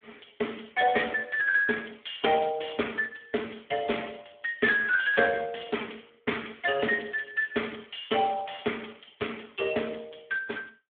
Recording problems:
phone line; 280 Hz to 3.5 kHz, Speex

